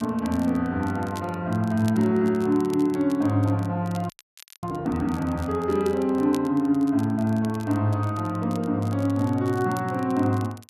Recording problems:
crackling; vinyl, SNR 24 dB
frozen audio; at 4 s for 0.5 s

